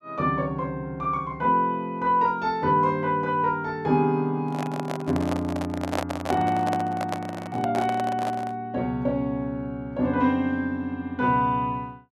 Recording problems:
handling noise; from 4.5 to 8.5 s; peak +2 dB vs average level

